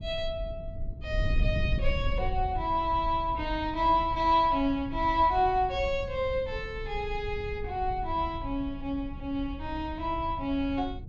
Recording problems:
treble missing; nothing above 8 kHz
wind on the microphone; below 90 Hz, SNR 8 dB

